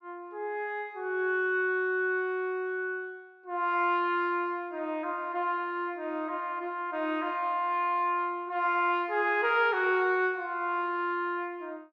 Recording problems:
none

